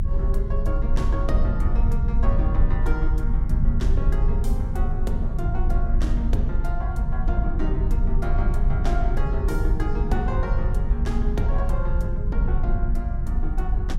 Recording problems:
rumble; below 60 Hz, strongest tone 24 Hz, SNR -7 dB

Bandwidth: 16 kHz